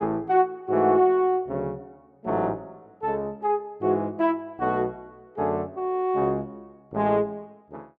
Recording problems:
none

